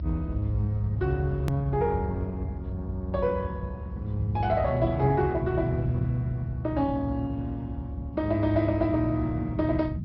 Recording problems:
treble missing; nothing above 5.5 kHz
codec artefacts; Opus, log-spectral distance 2 dB
rumble; below 110 Hz, SNR 3 dB
edit click; at 1.5 s

